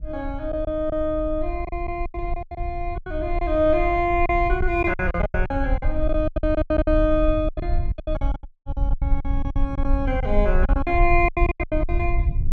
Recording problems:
low-frequency rumble; below 62 Hz, SNR 4 dB
packet loss; 17% of the sound replaced, filled with silence
dropout; at 8.5 s

